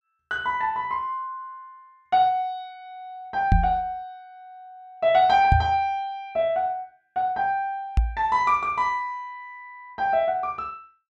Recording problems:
microphone thump; at 3.5 s, at 5.5 s and at 8 s; peak +7 dB vs average level

